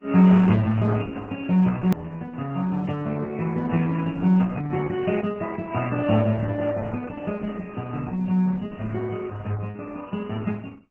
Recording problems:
lossy compression; MP3, then Opus, log-spectral distance 4 dB
click at an edit; at 2 s

